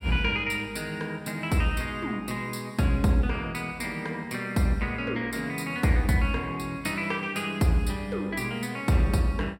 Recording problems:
none

